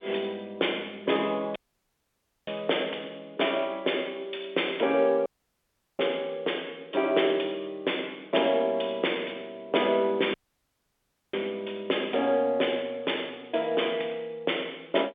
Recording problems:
phone line; 320 Hz to 3.6 kHz, G.711
dropout; at 1.5 s for 1 s, at 5.5 s for 0.5 s and at 10 s for 1 s

